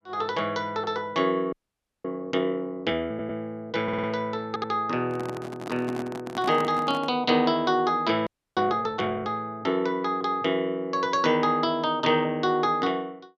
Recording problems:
frozen audio; at 1.5 s for 0.5 s and at 8.5 s
stutter; at 3 s, at 4 s and at 4.5 s
microphone handling noise; from 5 to 7 s; peak -5 dB vs average level

